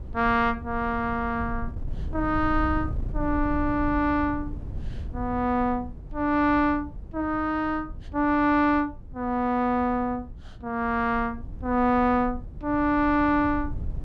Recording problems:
wind on the microphone; below 96 Hz, SNR 12 dB

